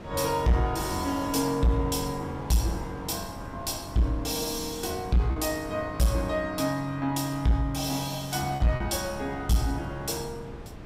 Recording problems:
distortion; soft clipping, signal-to-distortion ratio 11 dB
wind on the microphone; below 430 Hz, SNR 15 dB
packet loss; 1.1% of the sound replaced, filled with repeated pitch periods

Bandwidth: 15.5 kHz